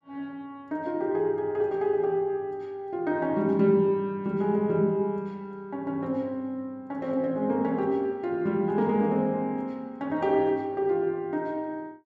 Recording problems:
none

